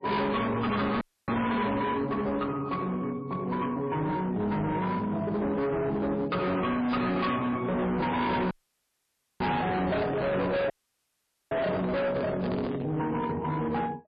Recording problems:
lossy codec; MP3, log-spectral distance 2 dB, nothing above 4.5 kHz
distortion; hard clipping, signal-to-distortion ratio 6 dB
dropout; at 1 s, at 8.5 s for 1 s and at 11 s for 1 s
handling noise; from 8 to 13 s; peak +1 dB vs average level

